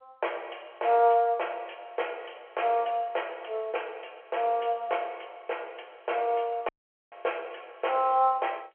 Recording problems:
phone line; 370 Hz to 3.3 kHz, G.711
dropout; at 6.5 s

